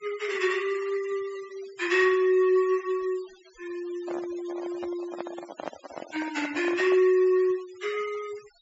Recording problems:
treble cut off; nothing above 8 kHz
denoising artefacts; signal-to-artefact ratio 19 dB
microphone handling noise; from 4 to 7 s; peak -4 dB vs average level

